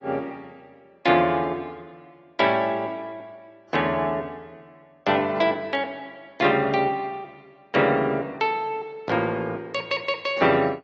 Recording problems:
codec artefacts; AAC, log-spectral distance 2 dB, nothing above 7.3 kHz

